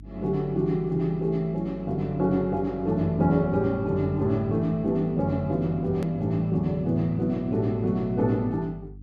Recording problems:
hum; 50 Hz, harmonics up to 300 Hz, SNR 20 dB
edit click; at 6 s

